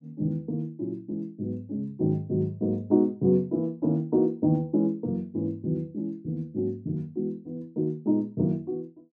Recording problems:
none

